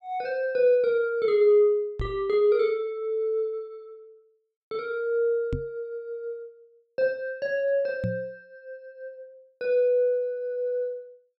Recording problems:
microphone thump; at 2 s, at 5.5 s and at 8 s; peak -1 dB vs average level

